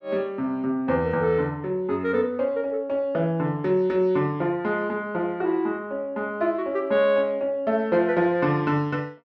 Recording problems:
none

